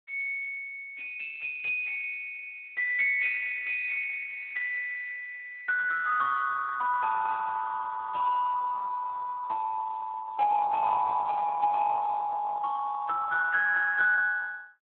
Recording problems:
telephone audio; 340 Hz to 2.2 kHz, Speex

